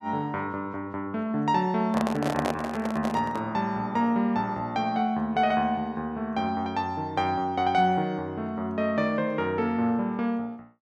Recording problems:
handling noise; from 2 to 3.5 s; peak +2 dB vs average level

